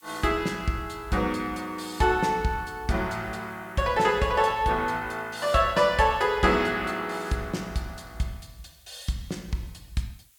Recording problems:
hiss; slope +3 dB per octave, SNR 29 dB

